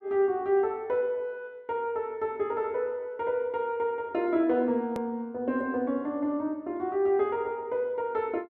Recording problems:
edit click; at 5 s

